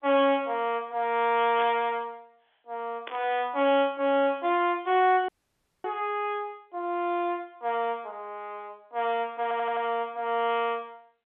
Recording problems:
phone line; 240 Hz to 3.6 kHz, G.711
static burst; at 1.5 s and at 3 s; peak -7 dB vs average level
dropout; at 5.5 s for 0.5 s
audio stuttering; at 9.5 s

